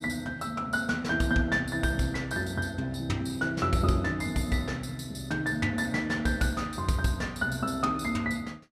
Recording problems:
none

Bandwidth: 15 kHz